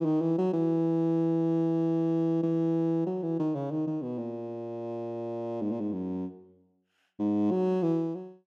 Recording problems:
none

